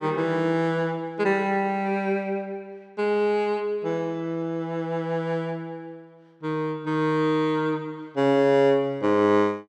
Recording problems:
none

